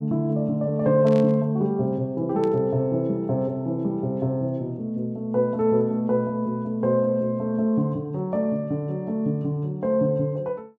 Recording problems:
burst of static; at 1 s and at 2.5 s; peak -14 dB vs average level

